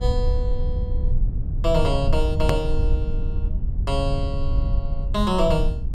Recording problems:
low-frequency rumble; below 72 Hz, SNR 0 dB
edit click; at 2.5 s

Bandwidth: 12.5 kHz